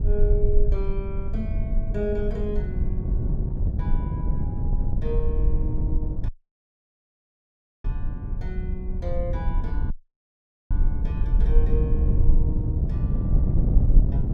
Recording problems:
rumble; below 48 Hz, strongest tone 20 Hz, SNR -6 dB
wind noise; below 140 Hz, SNR -6 dB
dropout; at 6.5 s for 1.5 s and at 10 s for 1 s

